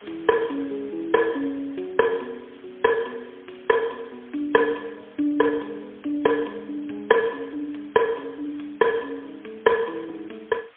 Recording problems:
telephone audio; 240 Hz to 3.3 kHz, AMR-NB, then MP3
hiss; SNR 27 dB

